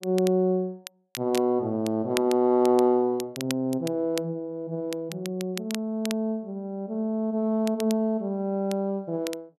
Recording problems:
crackling; vinyl, SNR 14 dB

